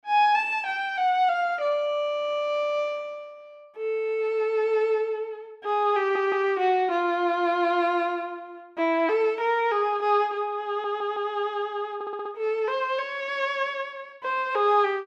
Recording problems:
audio stuttering; at 6 s, at 11 s and at 12 s

